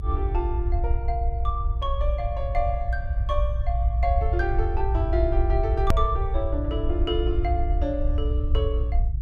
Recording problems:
rumble; below 68 Hz, SNR -3 dB
click at an edit; at 6 s

